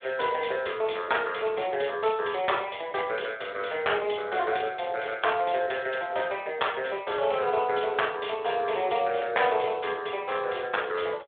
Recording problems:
phone line; 370 Hz to 3.6 kHz, Speex

